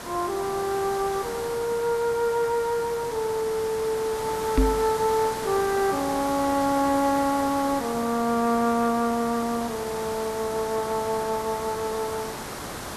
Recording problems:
hiss; SNR 9 dB
knock on the microphone; at 4.5 s; peak +7 dB vs average level

